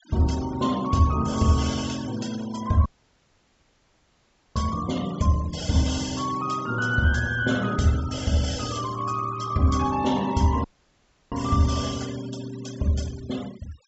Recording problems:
low-pass filter; nothing above 7.6 kHz
noise reduction artefacts; signal-to-artefact ratio 17 dB
audio cutting out; at 3 s for 1.5 s and at 11 s for 0.5 s

